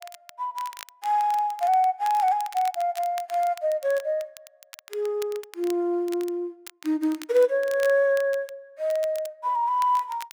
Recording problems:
crackle; vinyl, SNR 20 dB

